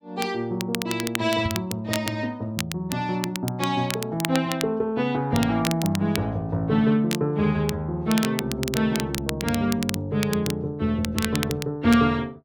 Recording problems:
crackle; vinyl, SNR 9 dB
knock on the microphone; at 1.5 s; peak +2 dB vs average level

